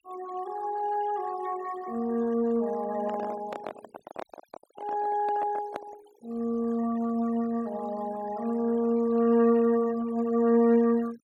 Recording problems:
noise reduction artefacts; signal-to-artefact ratio 21 dB
microphone handling noise; from 3 to 6 s; peak -5 dB vs average level

